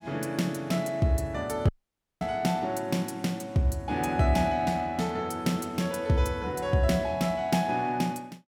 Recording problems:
audio cutting out; at 1.5 s for 0.5 s

